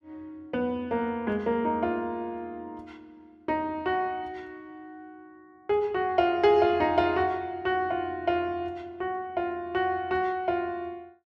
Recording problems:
none

